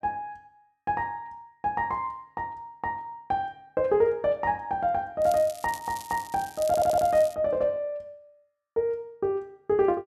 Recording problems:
crackling; from 5 to 7.5 s; loose cable, SNR 16 dB
stutter; at 6.5 s

